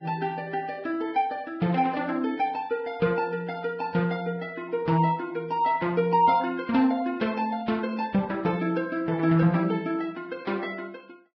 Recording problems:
lossy codec; Vorbis, log-spectral distance 2 dB, nothing above 5 kHz

